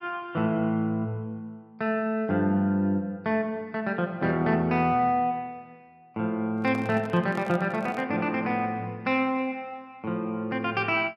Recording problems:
handling noise; from 6.5 to 8 s; peak -9 dB vs average level

